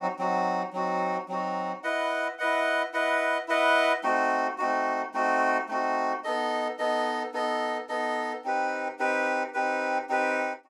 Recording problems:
none

